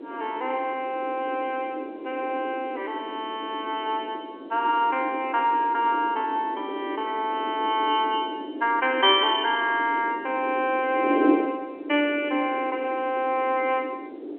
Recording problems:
phone line; 260 Hz to 3.3 kHz, G.711
wind on the microphone; below 420 Hz, SNR 9 dB

